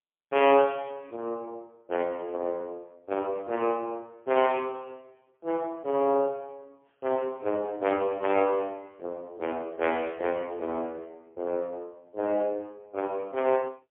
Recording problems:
telephone audio; 260 Hz to 3.2 kHz, AMR-NB, then MP3

